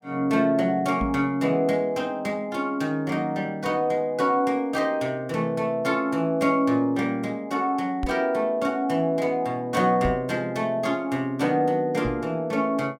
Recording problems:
knock on the microphone; 4 times, first at 1 s; peak -1 dB vs average level

